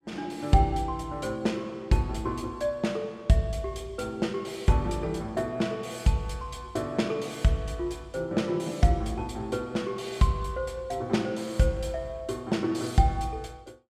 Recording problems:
none

